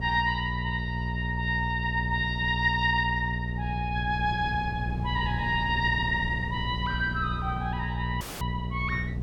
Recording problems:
hum; 60 Hz, harmonics up to 600 Hz, SNR 4 dB
wind on the microphone; below 220 Hz, SNR 13 dB
dropout; at 8 s

